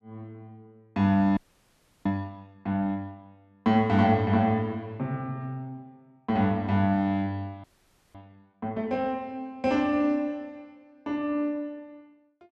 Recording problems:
frozen audio; at 1.5 s for 0.5 s and at 7.5 s for 0.5 s

